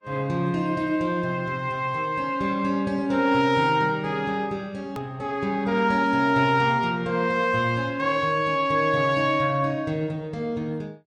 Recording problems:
lossy codec; Vorbis, log-spectral distance 2 dB
edit click; at 5 s

